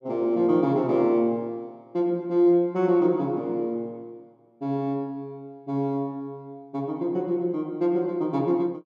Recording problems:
none

